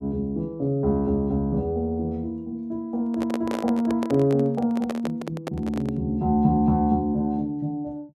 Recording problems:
microphone handling noise; from 3 to 6 s; peak -2 dB vs average level

